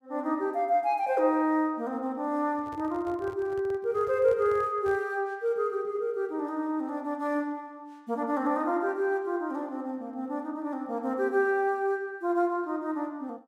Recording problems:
microphone handling noise; from 2.5 to 5 s; peak -12 dB vs average level

